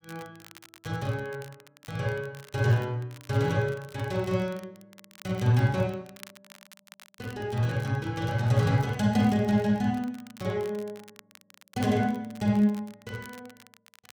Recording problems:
crackle; vinyl, SNR 24 dB

